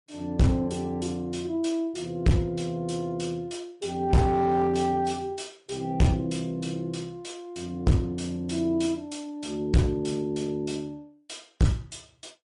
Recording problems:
codec artefacts; MP3, log-spectral distance 2 dB, nothing above 10.4 kHz
distorted audio; hard clipping, uneven, signal-to-distortion ratio 6 dB

